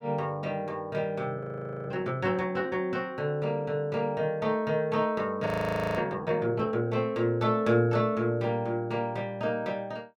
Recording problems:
frozen audio; at 1.5 s and at 5.5 s for 0.5 s

